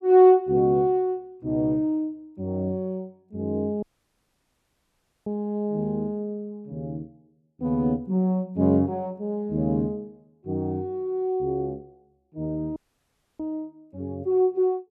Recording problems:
dropout; at 4 s for 1.5 s and at 13 s for 0.5 s

